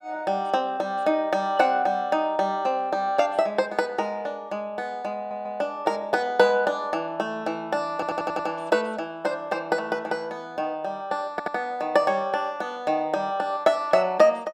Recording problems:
stutter; at 5 s, at 8 s and at 11 s

